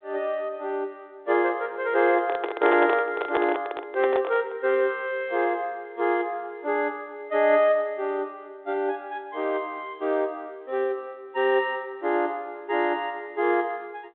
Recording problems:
phone line; 260 Hz to 3.7 kHz, G.726
handling noise; from 2 to 4.5 s; peak +3 dB vs average level

